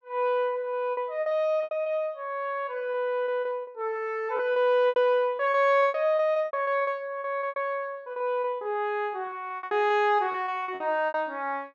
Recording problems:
packet loss; 16% of the sound replaced, filled with repeated pitch periods

